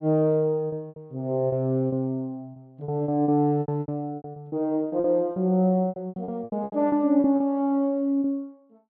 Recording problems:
lost packets; 16% of the sound replaced, filled with repeated pitch periods

